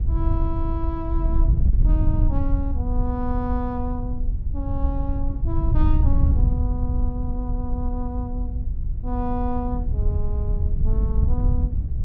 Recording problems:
treble missing; nothing above 8 kHz
wind noise; below 78 Hz, SNR -7 dB

